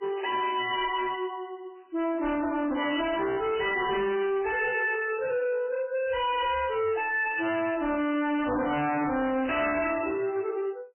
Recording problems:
lossy codec; MP3, log-spectral distance 5 dB, nothing above 2.7 kHz
distortion; hard clipping, signal-to-distortion ratio 6 dB

